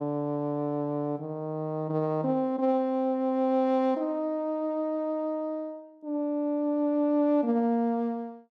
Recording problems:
none

